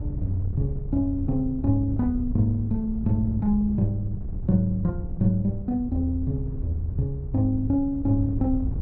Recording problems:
wind on the microphone; below 100 Hz, SNR 8 dB

